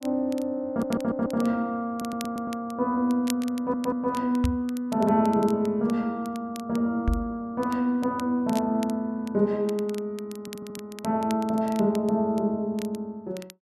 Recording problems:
crackling; vinyl, SNR 20 dB
stutter; 4 times, first at 0.5 s
microphone bump; at 4.5 s and at 7 s; peak +4 dB vs average level

